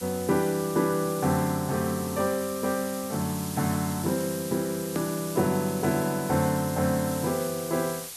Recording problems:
hiss; slope +2 dB per octave, SNR 10 dB
edit click; at 5 s

